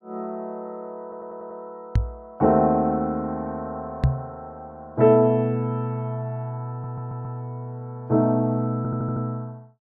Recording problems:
stutter; at 1 s, at 6.5 s and at 9 s
microphone bump; at 2 s and at 4 s; peak +8 dB vs average level

